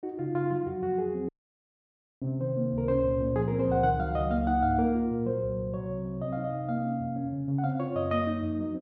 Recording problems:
dropout; at 1.5 s for 1 s

